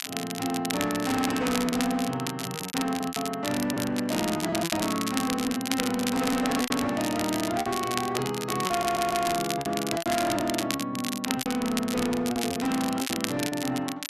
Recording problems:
distortion; hard clipping, signal-to-distortion ratio 11 dB
crackle; vinyl, SNR 5 dB
lost packets; 9% of the sound replaced, filled with repeated pitch periods
audio stuttering; at 8.5 s

